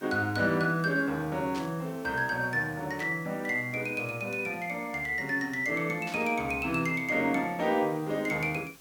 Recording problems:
background hiss; slope -2 dB per octave, SNR 24 dB
static burst; at 1.5 s, at 3 s and at 6 s; peak -9 dB vs average level

